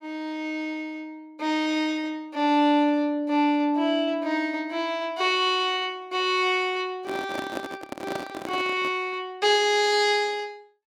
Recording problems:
handling noise; from 7 to 9 s; peak -4 dB vs average level

